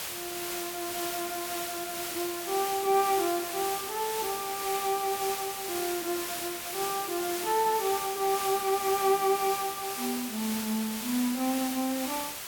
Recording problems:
hiss; slope 0 dB per octave, SNR 4 dB

